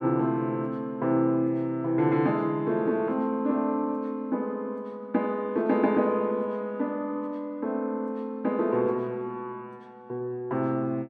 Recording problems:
none

